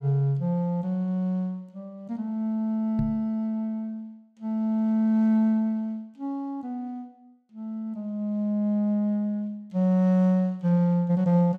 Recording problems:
microphone thump; at 3 s; peak 0 dB vs average level

